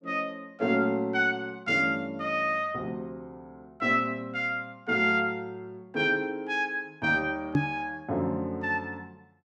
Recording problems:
microphone thump; at 7.5 s; peak +7 dB vs average level

